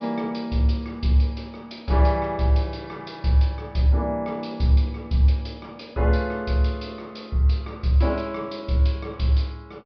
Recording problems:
low-pass filter; nothing above 5.5 kHz

